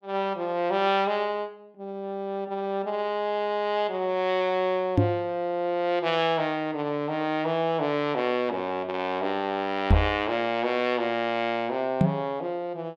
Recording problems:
microphone bump; at 5 s, at 10 s and at 12 s; peak +9 dB vs average level

